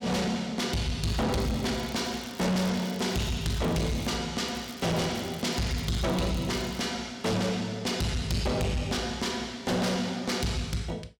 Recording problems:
distortion; soft clipping, signal-to-distortion ratio 7 dB
crackling; from 1 to 4 s and from 4.5 to 7 s; loose cable, SNR 19 dB

